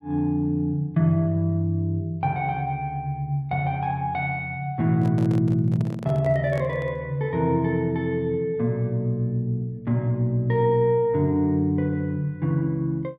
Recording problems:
microphone handling noise; from 5 to 7 s; peak -9 dB vs average level

